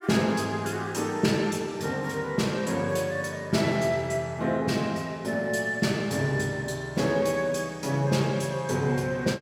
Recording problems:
none

